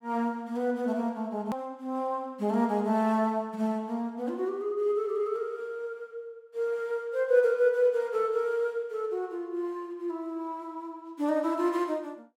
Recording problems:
hard cut with a click; at 1.5 s

